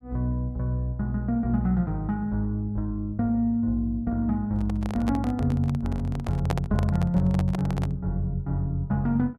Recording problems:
microphone handling noise; from 4.5 to 8 s; peak 0 dB vs average level

